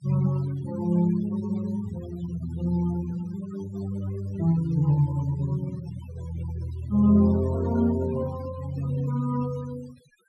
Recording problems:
noise reduction artefacts; signal-to-artefact ratio 19 dB

